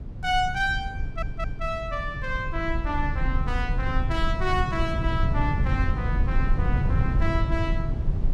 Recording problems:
rumble; below 110 Hz, SNR -1 dB
audio stuttering; at 1 s

